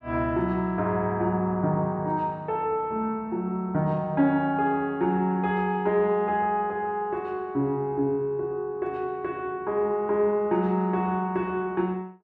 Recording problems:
none

